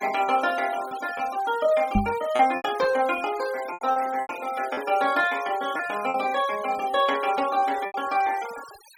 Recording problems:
noise reduction artefacts; signal-to-artefact ratio 16 dB
lost packets; 7% of the sound replaced, filled with repeated pitch periods
knock on the microphone; at 2 s; peak +5 dB vs average level

